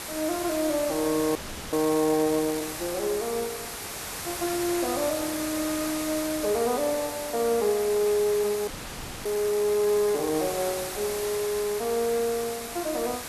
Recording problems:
hiss; slope -2 dB per octave, SNR 7 dB
audio freezing; at 1.5 s and at 8.5 s for 0.5 s

